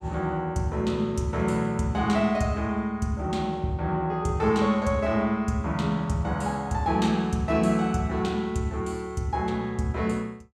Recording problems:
none

